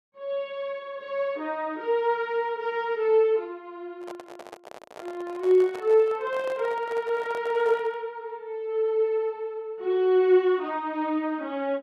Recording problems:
handling noise; from 4 to 8 s; peak -10 dB vs average level

